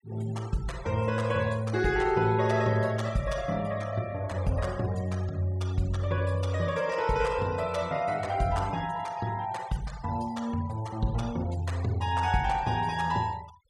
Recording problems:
noise reduction artefacts; signal-to-artefact ratio 20 dB

